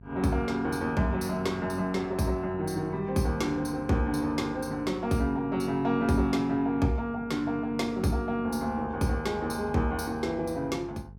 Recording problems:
electrical hum; 50 Hz, harmonics up to 450 Hz, SNR 19 dB

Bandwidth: 17 kHz